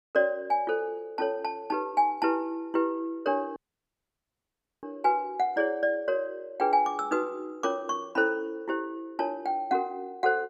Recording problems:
dropout; at 3.5 s for 1.5 s

